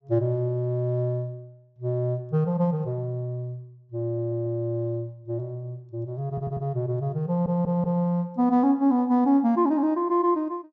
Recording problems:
low-pass filter; nothing above 8 kHz
stutter; at 4 s, at 6.5 s and at 7.5 s

